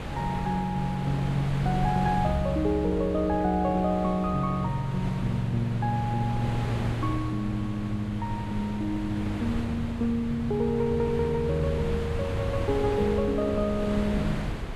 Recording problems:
wind on the microphone; below 510 Hz, SNR 7 dB

